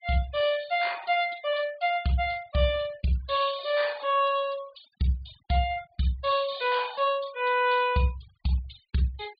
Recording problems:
treble missing; nothing above 4.7 kHz
noise reduction artefacts; signal-to-artefact ratio 20 dB

